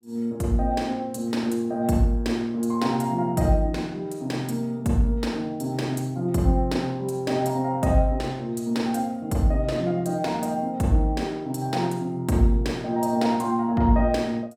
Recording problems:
none

